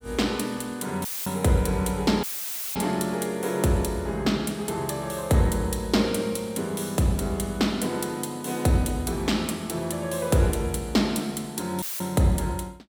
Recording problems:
dropout; at 1 s, at 2 s for 0.5 s and at 12 s; filled with static

